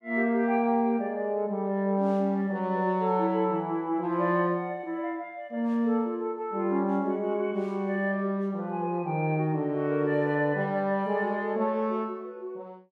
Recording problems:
none

